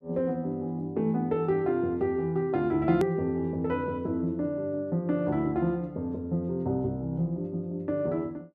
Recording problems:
click at an edit; at 3 s

